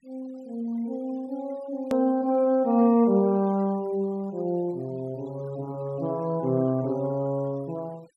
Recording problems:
noise reduction artefacts; signal-to-artefact ratio 27 dB
edit click; at 2 s

